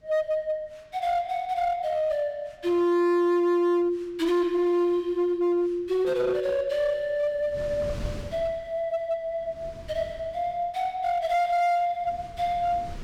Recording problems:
distortion; hard clipping, uneven, signal-to-distortion ratio 10 dB
wind noise; below 230 Hz, SNR 16 dB

